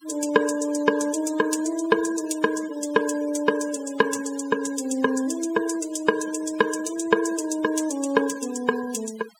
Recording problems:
denoising artefacts; signal-to-artefact ratio 15 dB

